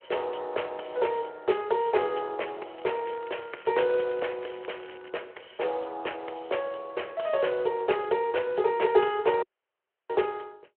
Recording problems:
phone line; 320 Hz to 3.2 kHz, Speex
crackle; from 3 to 5 s; loose cable, SNR 21 dB
audio cutting out; at 9.5 s for 0.5 s

